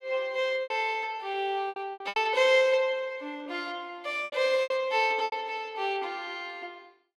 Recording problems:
packet loss; 9% of the sound replaced, filled with repeated pitch periods

